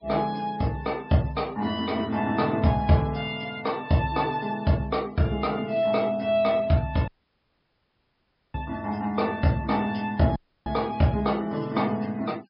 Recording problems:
treble missing; nothing above 5.5 kHz
denoising artefacts; signal-to-artefact ratio 26 dB
audio cutting out; at 7 s for 1.5 s and at 10 s

